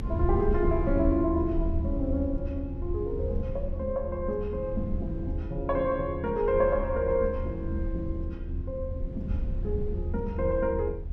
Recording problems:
rumble; below 78 Hz, SNR 4 dB

